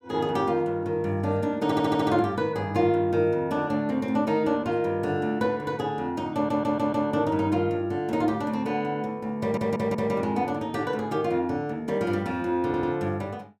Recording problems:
stutter; 4 times, first at 1.5 s

